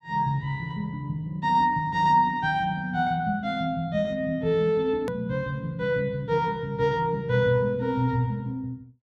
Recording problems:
edit click; at 5 s

